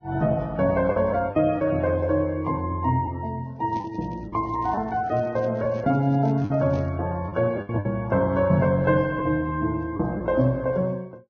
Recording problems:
lossy codec; Vorbis, log-spectral distance 2 dB, nothing above 5.8 kHz
packet loss; 5% of the sound replaced, filled with the last packet
microphone handling noise; from 3.5 to 7 s; peak -7 dB vs average level

